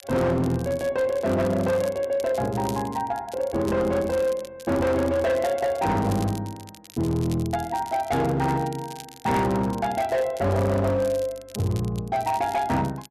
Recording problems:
distorted audio; hard clipping, signal-to-distortion ratio 11 dB
crackling; vinyl, SNR 20 dB

